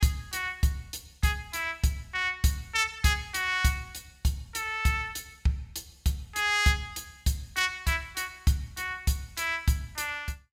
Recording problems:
none

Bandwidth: 16 kHz